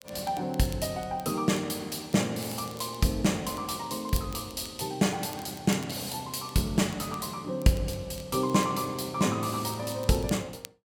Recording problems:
crackle; vinyl, SNR 20 dB

